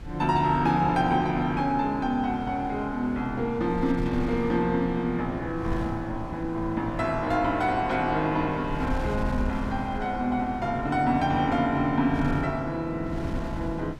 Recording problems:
wind noise; below 130 Hz, SNR 12 dB

